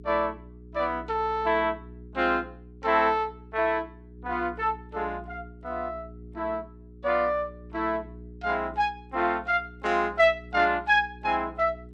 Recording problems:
hum; 60 Hz, harmonics up to 420 Hz, SNR 19 dB

